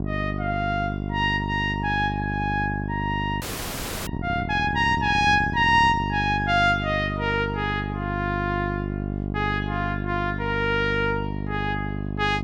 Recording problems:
electrical hum; 50 Hz, harmonics up to 800 Hz, SNR 5 dB
frozen audio; at 3.5 s for 0.5 s

